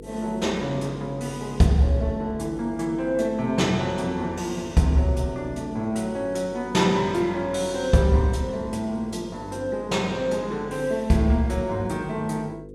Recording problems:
hum; 50 Hz, harmonics up to 500 Hz, SNR 17 dB

